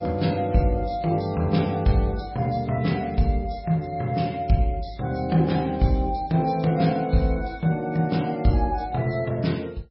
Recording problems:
lossy codec; MP3, log-spectral distance 3 dB, nothing above 5.3 kHz

